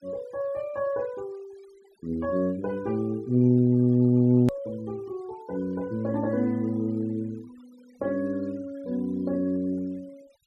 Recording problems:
denoising artefacts; signal-to-artefact ratio 28 dB
edit click; at 4.5 s

